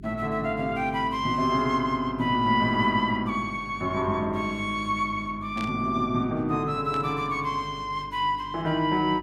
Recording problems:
hum; 50 Hz, harmonics up to 400 Hz, SNR 18 dB
burst of static; at 5.5 s and at 7 s; peak -9 dB vs average level

